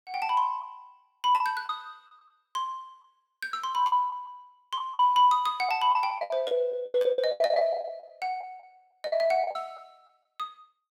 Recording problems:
packet loss; 14% of the sound replaced, filled with the last packet

